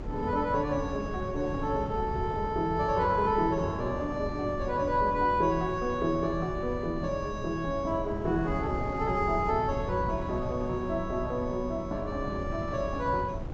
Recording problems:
treble cut off; nothing above 8 kHz
wind on the microphone; below 220 Hz, SNR 8 dB

